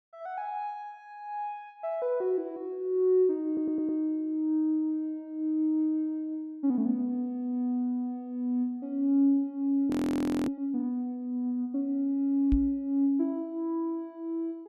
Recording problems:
stutter; at 3.5 s
frozen audio; at 10 s for 0.5 s
microphone bump; at 13 s; peak +3 dB vs average level

